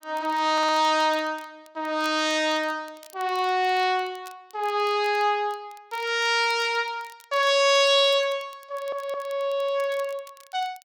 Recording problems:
crackle; vinyl, SNR 28 dB
stutter; at 0.5 s and at 8.5 s

